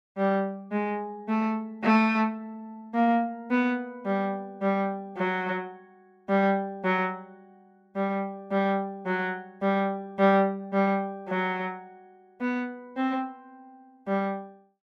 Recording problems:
none

